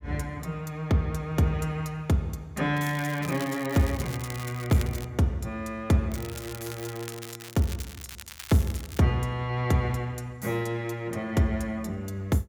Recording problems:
crackling; from 3 to 5 s and from 6 to 9 s; loose cable, SNR 14 dB

